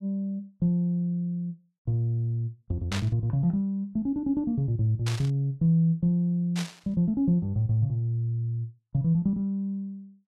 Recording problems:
static burst; at 3 s, at 5 s and at 6.5 s; peak -3 dB vs average level

